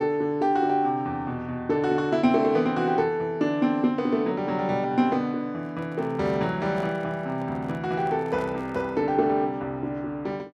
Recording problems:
microphone handling noise; from 5.5 to 9 s; peak -11 dB vs average level

